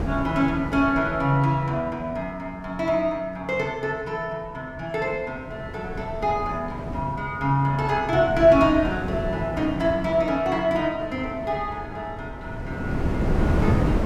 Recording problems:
wind noise; below 330 Hz, SNR 7 dB

